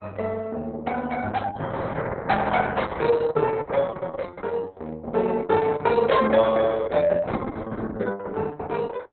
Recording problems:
lossy codec; Opus, log-spectral distance 4 dB, nothing above 4 kHz

